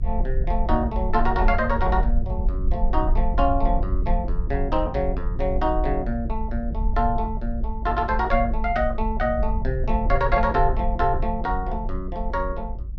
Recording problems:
rumble; below 54 Hz, SNR 3 dB

